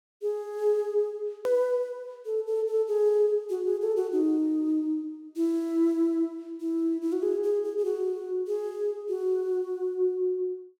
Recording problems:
hard cut with a click; at 1.5 s

